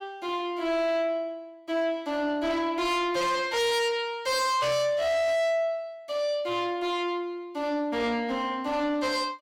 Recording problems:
distorted audio; soft clipping, signal-to-distortion ratio 8 dB

